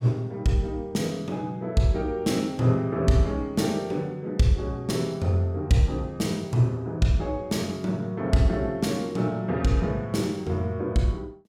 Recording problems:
none

